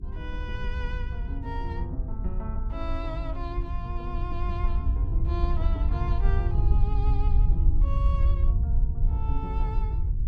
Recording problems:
electrical hum; 50 Hz, harmonics up to 400 Hz, SNR 12 dB
low-frequency rumble; below 70 Hz, SNR -10 dB

